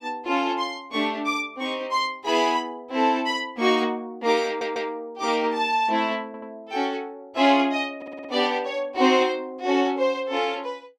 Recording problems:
audio stuttering; at 4.5 s, at 6.5 s and at 8 s

